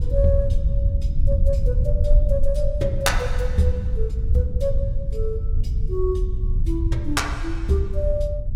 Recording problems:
rumble; below 70 Hz, SNR -2 dB

